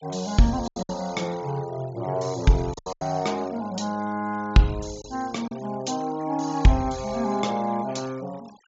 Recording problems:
low-pass filter; nothing above 7.6 kHz
noise reduction artefacts; signal-to-artefact ratio 22 dB
packet loss; 4% of the sound replaced, filled with silence

